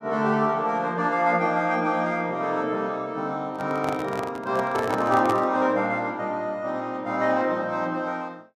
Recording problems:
microphone handling noise; from 3.5 to 5.5 s; peak -2 dB vs average level

